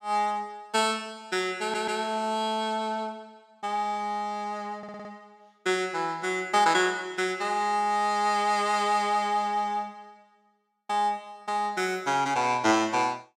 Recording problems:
stutter; at 1.5 s and at 5 s

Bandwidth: 16 kHz